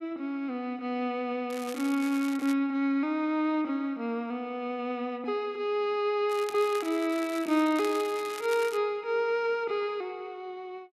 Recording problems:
crackle; from 1.5 to 2.5 s and from 6.5 to 9 s; loose cable, SNR 15 dB

